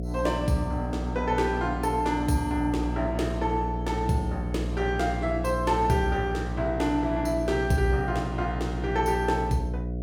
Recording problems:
electrical hum; 60 Hz, harmonics up to 720 Hz, SNR 5 dB

